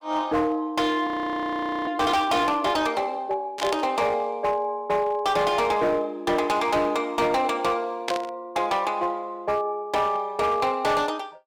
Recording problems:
distorted audio; hard clipping, uneven, signal-to-distortion ratio 12 dB
audio freezing; at 1 s for 1 s
static burst; at 3.5 s and at 8 s; peak +1 dB vs average level

